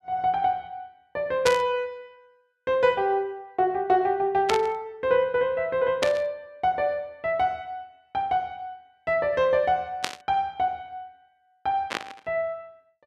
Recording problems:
static burst; 5 times, first at 1.5 s; peak +4 dB vs average level

